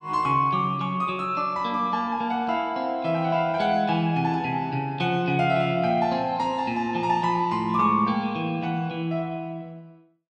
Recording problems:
none

